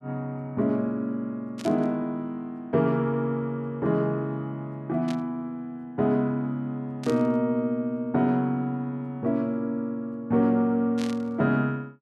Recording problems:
static burst; 4 times, first at 1.5 s; peak -7 dB vs average level

